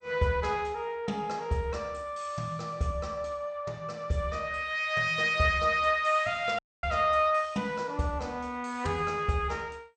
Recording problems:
lossy codec; MP2, log-spectral distance 2 dB, nothing above 8.5 kHz
dropout; at 6.5 s

